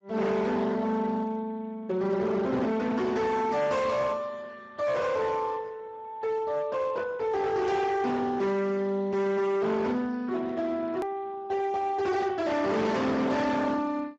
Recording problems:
lossy compression; Speex, log-spectral distance 3 dB
distorted audio; hard clipping, signal-to-distortion ratio 7 dB
hard cut with a click; at 11 s

